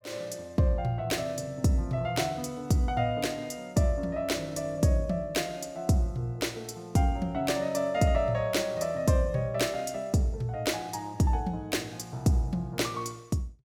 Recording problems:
none

